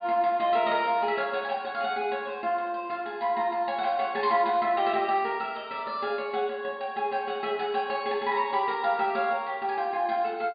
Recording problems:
treble missing; nothing above 4.7 kHz

